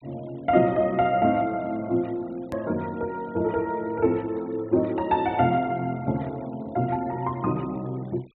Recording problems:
treble missing; nothing above 4 kHz
noise reduction artefacts; signal-to-artefact ratio 26 dB
edit click; at 2.5 s

